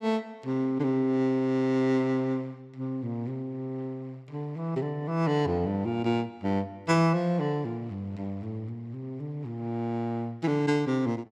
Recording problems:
none

